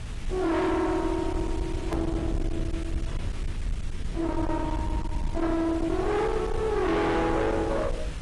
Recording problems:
lossy codec; AAC, log-spectral distance 2 dB, nothing above 10.7 kHz
distortion; hard clipping, uneven, signal-to-distortion ratio 6 dB
hiss; SNR 17 dB
rumble; below 140 Hz, SNR 6 dB
edit click; at 2 s

